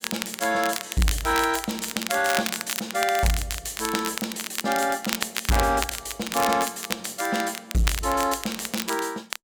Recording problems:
distortion; hard clipping, signal-to-distortion ratio 11 dB
crackling; vinyl, SNR 5 dB

